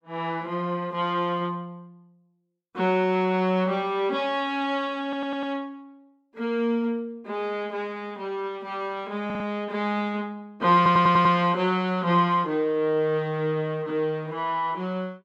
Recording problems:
stutter; at 5 s, at 9.5 s and at 11 s

